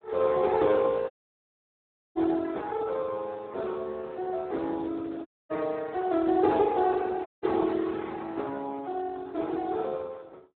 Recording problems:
telephone audio; 240 Hz to 3.8 kHz, Speex
audio cutting out; at 1 s for 1 s, at 5.5 s and at 7.5 s

